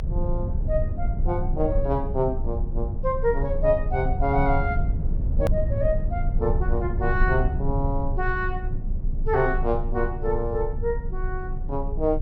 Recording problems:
low-pass filter; nothing above 5.9 kHz
low-frequency rumble; below 80 Hz, strongest tone 26 Hz, SNR 1 dB
edit click; at 5.5 s

